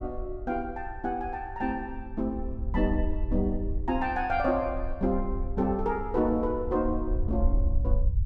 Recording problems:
low-frequency rumble; below 66 Hz, SNR 4 dB

